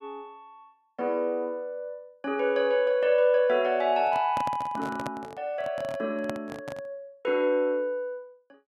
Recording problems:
microphone handling noise; from 4 to 7 s; peak -4 dB vs average level

